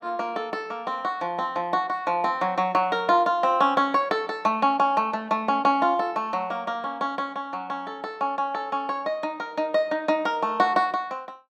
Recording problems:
none

